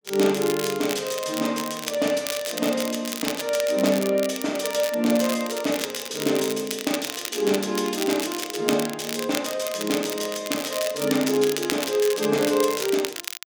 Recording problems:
crackling; vinyl, SNR 7 dB

